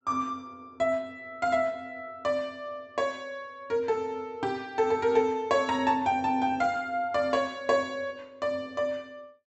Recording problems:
treble cut off; nothing above 8 kHz

